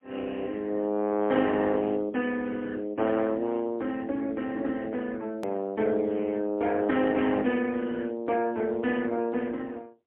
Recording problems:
telephone audio; 150 Hz to 3.5 kHz, AMR-NB, then MP3
edit click; at 5.5 s

